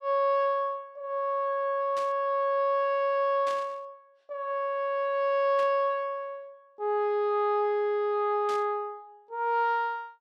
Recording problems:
static burst; 4 times, first at 2 s; peak -11 dB vs average level

